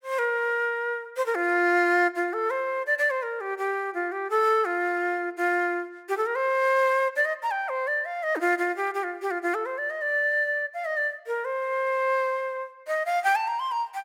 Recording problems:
none

